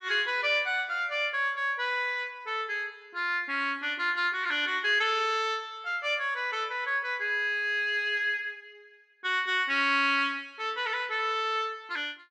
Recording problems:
none

